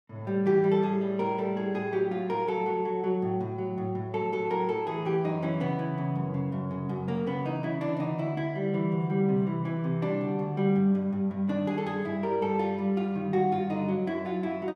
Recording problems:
none

